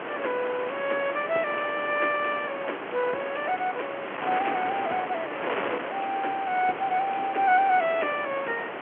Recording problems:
phone line; 260 Hz to 3.2 kHz, G.711
wind noise; below 1.9 kHz, SNR 6 dB

